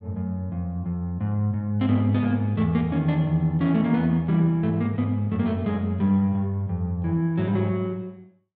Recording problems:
none

